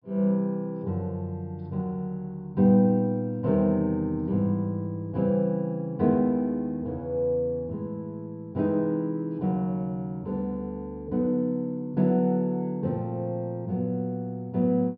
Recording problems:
treble cut off; nothing above 5.5 kHz

